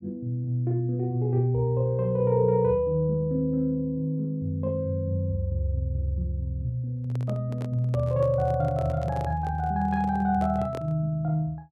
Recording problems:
handling noise; from 7 to 11 s; peak -8 dB vs average level

